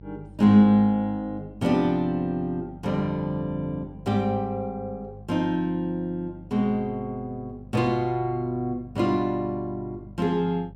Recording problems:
electrical hum; 50 Hz, harmonics up to 600 Hz, SNR 20 dB

